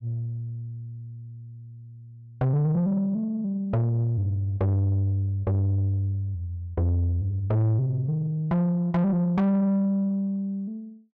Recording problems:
distorted audio; soft clipping, signal-to-distortion ratio 10 dB

